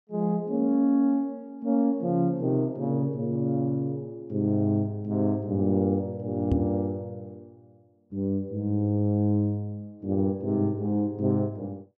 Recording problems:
knock on the microphone; at 6.5 s; peak +5 dB vs average level

